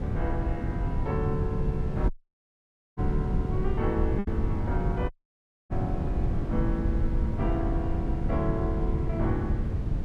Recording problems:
wind on the microphone; below 130 Hz, SNR -3 dB
packet loss; 0.8% of the sound replaced, filled with repeated pitch periods
audio cutting out; at 2 s for 1 s and at 5 s for 0.5 s

